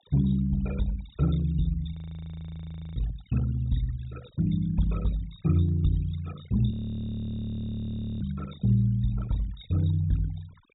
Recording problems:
treble missing; nothing above 4 kHz
denoising artefacts; signal-to-artefact ratio 19 dB
audio freezing; at 2 s for 1 s and at 6.5 s for 1.5 s

